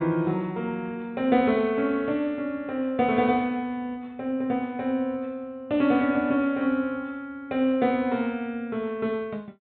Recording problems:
treble cut off; nothing above 4 kHz

